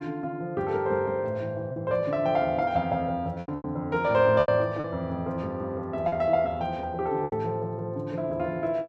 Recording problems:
lost packets; 5% of the sound replaced, filled with repeated pitch periods

